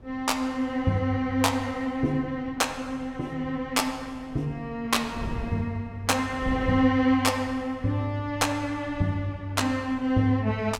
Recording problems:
wind on the microphone; below 180 Hz, SNR 17 dB

